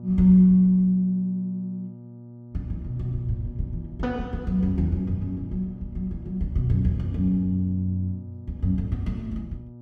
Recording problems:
hum; 60 Hz, harmonics up to 600 Hz, SNR 18 dB

